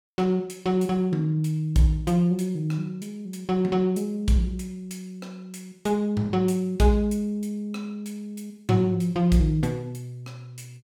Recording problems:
none

